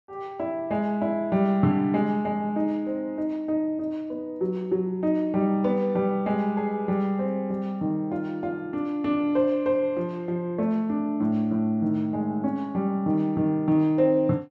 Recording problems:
none

